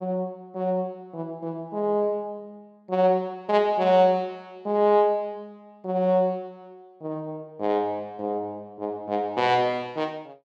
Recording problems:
none

